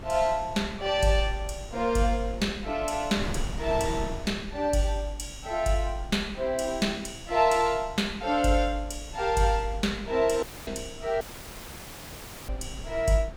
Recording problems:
wind noise; below 220 Hz, SNR 14 dB
dropout; at 10 s and at 11 s for 1.5 s

